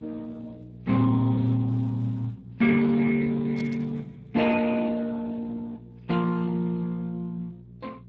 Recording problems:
codec artefacts; Speex, log-spectral distance 3 dB
electrical hum; 60 Hz, harmonics up to 420 Hz, SNR 20 dB
static burst; at 3.5 s; peak -14 dB vs average level

